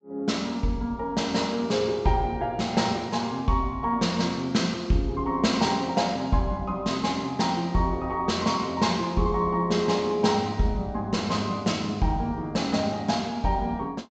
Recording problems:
treble missing; nothing above 8 kHz

